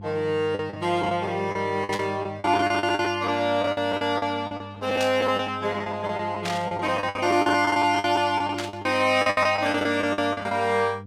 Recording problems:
hum; 50 Hz, harmonics up to 500 Hz, SNR 17 dB
packet loss; 16% of the sound replaced, filled with the last packet
static burst; 4 times, first at 2 s; peak -4 dB vs average level

